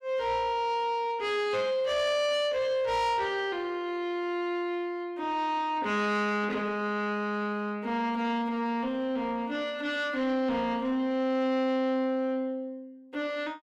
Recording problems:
distorted audio; soft clipping, signal-to-distortion ratio 11 dB

